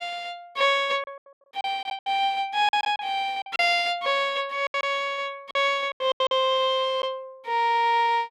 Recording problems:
packet loss; 9% of the sound replaced, filled with silence

